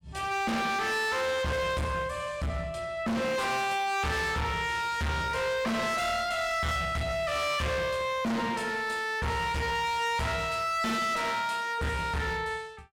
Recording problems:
distorted audio; hard clipping, uneven, signal-to-distortion ratio 6 dB

